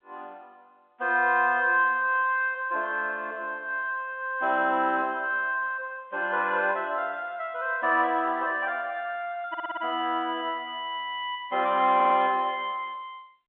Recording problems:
phone line; 220 Hz to 3.5 kHz, G.711
stutter; at 9.5 s and at 12 s

